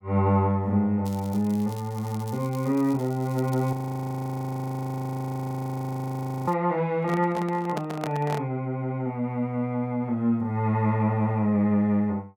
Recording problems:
crackling; from 1 to 3.5 s and at 6.5 s; loose cable, SNR 23 dB
frozen audio; at 3.5 s for 2.5 s
handling noise; from 7 to 8.5 s; peak -3 dB vs average level

